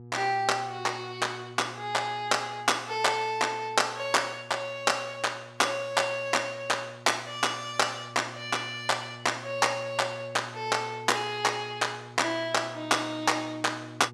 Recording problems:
hum; 60 Hz, harmonics up to 840 Hz, SNR 19 dB

